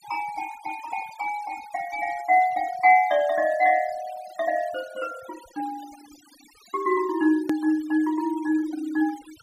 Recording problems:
noise reduction artefacts; signal-to-artefact ratio 21 dB
click at an edit; at 7.5 s

